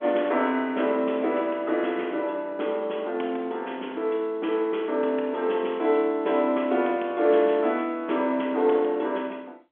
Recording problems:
telephone audio; 220 Hz to 3.5 kHz, G.711

